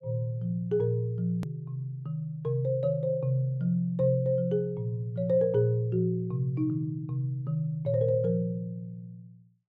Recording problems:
edit click; at 1.5 s

